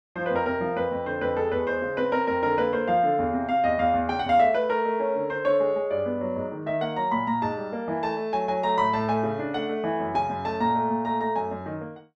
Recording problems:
none

